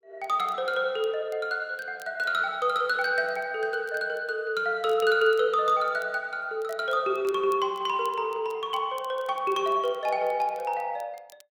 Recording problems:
crackle; vinyl, SNR 28 dB

